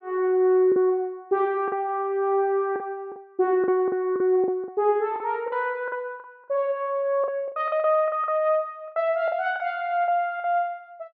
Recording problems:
packet loss; 10% of the sound replaced, filled with the last packet

